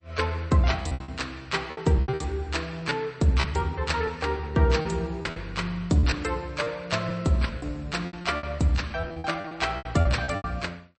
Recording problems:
lossy compression; MP3, log-spectral distance 3 dB, nothing above 8.2 kHz
lost packets; 13% of the sound replaced, filled with repeated pitch periods

